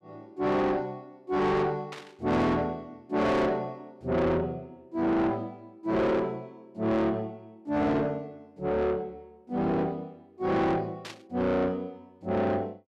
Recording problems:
distorted audio; soft clipping, signal-to-distortion ratio 7 dB
burst of static; at 2 s and at 11 s; peak -8 dB vs average level

